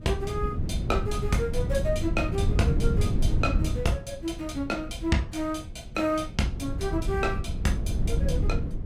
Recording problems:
wind noise; below 130 Hz, SNR 0 dB

